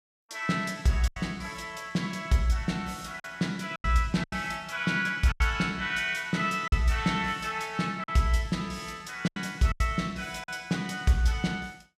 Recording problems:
packet loss; 6% of the sound replaced, filled with silence

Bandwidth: 14.5 kHz